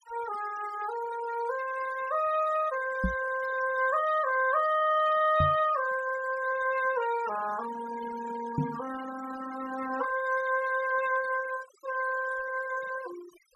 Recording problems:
denoising artefacts; signal-to-artefact ratio 15 dB
microphone bump; at 3 s, at 5.5 s and at 8.5 s; peak +4 dB vs average level

